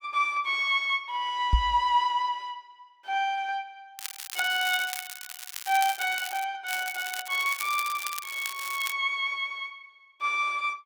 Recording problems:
microphone thump; at 1.5 s; peak +7 dB vs average level
crackling; from 4 to 6.5 s and from 6.5 to 9 s; loose cable, SNR 9 dB

